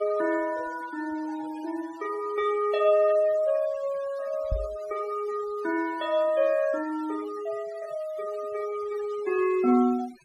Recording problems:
denoising artefacts; signal-to-artefact ratio 20 dB
microphone bump; at 4.5 s; peak +1 dB vs average level

